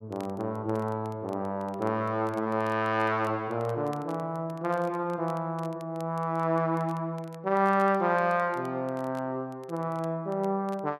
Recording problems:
crackling; vinyl, SNR 27 dB

